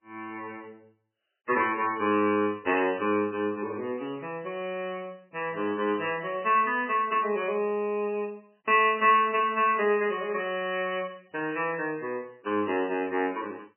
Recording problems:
lossy compression; MP3, log-spectral distance 5 dB, nothing above 2.7 kHz

